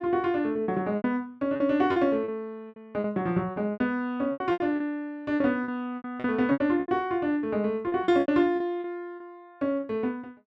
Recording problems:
lost packets; 13% of the sound replaced, filled with repeated pitch periods

